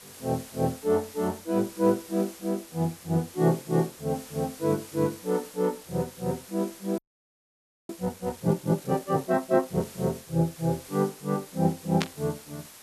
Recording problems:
hiss; slope -1 dB per octave, SNR 17 dB
audio freezing; at 7 s for 1 s
static burst; at 12 s; peak +3 dB vs average level

